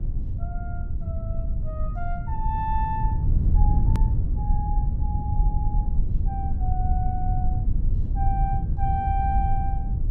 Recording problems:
rumble; below 84 Hz, SNR -7 dB
hard cut with a click; at 4 s

